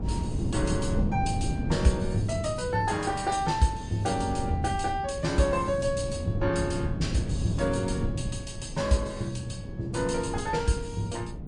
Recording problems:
lossy compression; MP3, log-spectral distance 3 dB, nothing above 9.2 kHz
wind noise; below 200 Hz, SNR 5 dB

